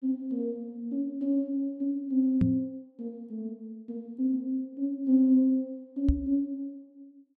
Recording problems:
microphone bump; at 2.5 s and at 6 s; peak +7 dB vs average level

